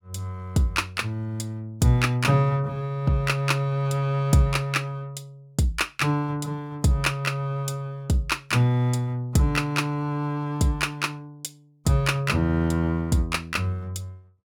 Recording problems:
none

